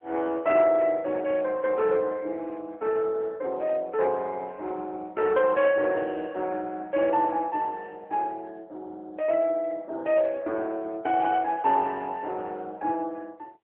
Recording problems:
telephone audio; 300 Hz to 3.4 kHz, AMR-NB

